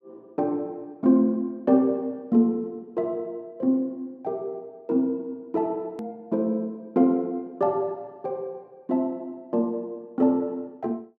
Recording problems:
edit click; at 6 s

